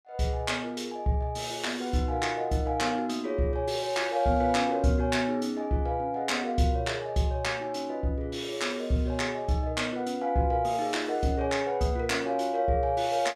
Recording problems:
none

